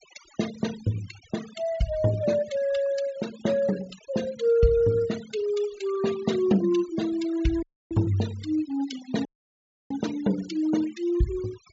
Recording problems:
treble missing; nothing above 8 kHz
denoising artefacts; signal-to-artefact ratio 16 dB
dropout; at 7.5 s and at 9.5 s for 0.5 s

